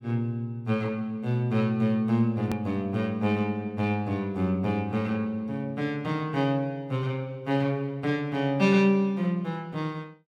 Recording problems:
click at an edit; at 2.5 s

